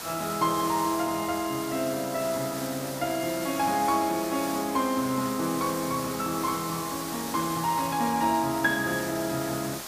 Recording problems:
hiss; slope -2 dB per octave, SNR 8 dB

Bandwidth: 15 kHz